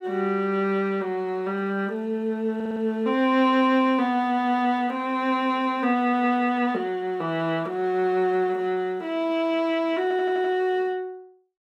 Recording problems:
stutter; at 2.5 s and at 10 s

